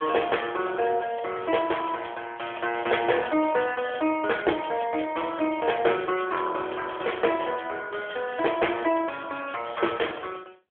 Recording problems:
telephone audio; 280 Hz to 3.3 kHz, AMR-NB

